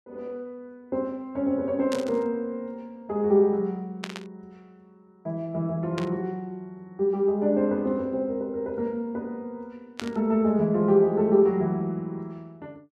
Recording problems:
burst of static; 4 times, first at 2 s; peak -4 dB vs average level

